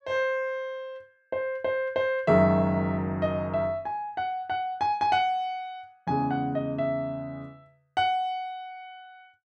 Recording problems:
none

